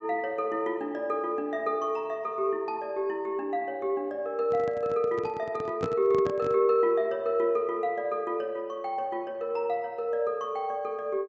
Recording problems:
treble cut off; nothing above 8 kHz
microphone handling noise; from 4.5 to 6.5 s; peak 0 dB vs average level

